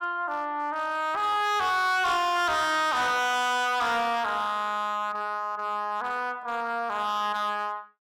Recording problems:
distorted audio; hard clipping, signal-to-distortion ratio 7 dB

